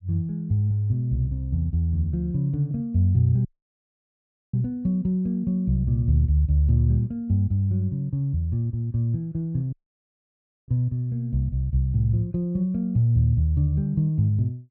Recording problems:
dropout; at 3.5 s for 1 s and at 9.5 s for 1 s

